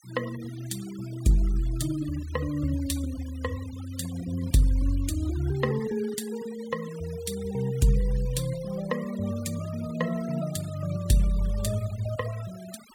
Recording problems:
noise reduction artefacts; signal-to-artefact ratio 18 dB

